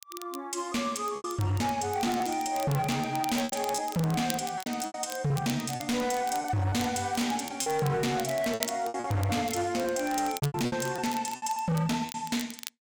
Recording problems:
distortion; hard clipping, signal-to-distortion ratio 7 dB
crackling; vinyl, SNR 13 dB
lost packets; 9% of the sound replaced, filled with repeated pitch periods

